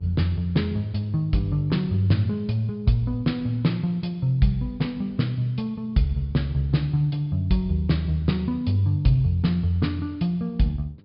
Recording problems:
low-pass filter; nothing above 5.1 kHz
electrical hum; 50 Hz, harmonics up to 900 Hz, SNR 29 dB

